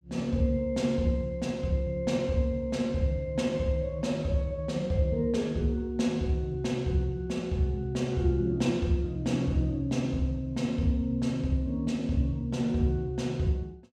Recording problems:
none

